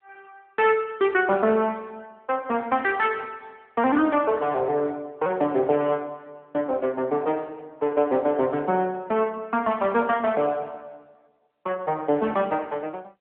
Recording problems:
phone line; 240 Hz to 3.5 kHz, AMR-NB

